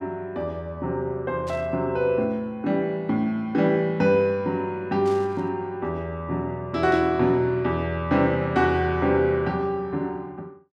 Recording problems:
static burst; at 1.5 s, at 5 s and at 7 s; peak -14 dB vs average level

